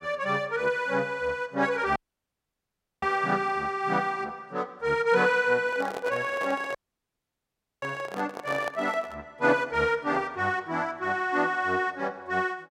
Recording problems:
dropout; at 2 s for 1 s and at 7 s for 1 s
handling noise; from 5.5 to 9 s; peak -4 dB vs average level

